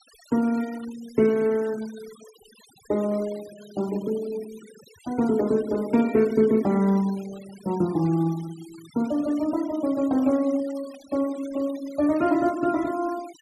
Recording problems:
noise reduction artefacts; signal-to-artefact ratio 21 dB

